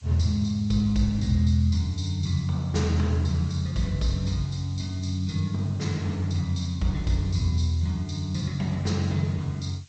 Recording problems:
lossy codec; G.722, then Vorbis, log-spectral distance 4 dB, nothing above 8 kHz
background hiss; slope +5 dB per octave, SNR 29 dB

